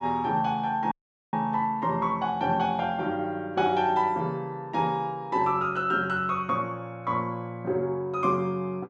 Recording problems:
audio cutting out; at 1 s

